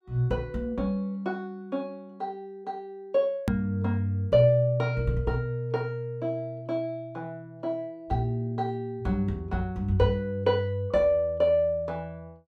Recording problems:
click at an edit; at 3.5 s

